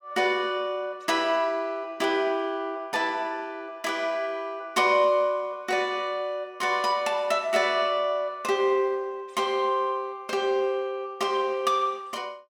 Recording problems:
none

